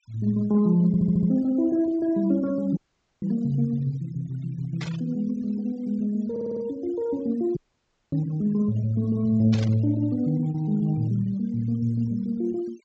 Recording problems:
low-pass filter; nothing above 8 kHz
noise reduction artefacts; signal-to-artefact ratio 26 dB
stutter; at 1 s and at 6.5 s
audio cutting out; at 3 s and at 7.5 s for 0.5 s
burst of static; at 5 s and at 9.5 s; peak -7 dB vs average level

